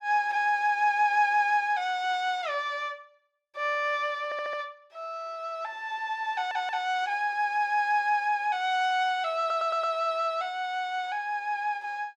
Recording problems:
audio stuttering; at 4.5 s, at 6.5 s and at 9.5 s

